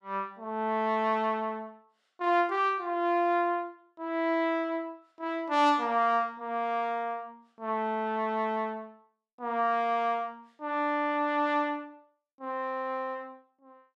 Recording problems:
none

